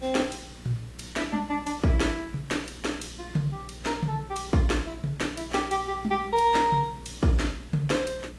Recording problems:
codec artefacts; AAC, log-spectral distance 3 dB, nothing above 11 kHz
hum; 60 Hz, harmonics up to 600 Hz, SNR 19 dB
background hiss; SNR 22 dB

